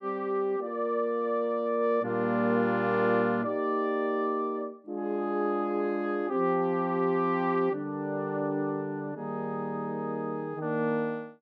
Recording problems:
none

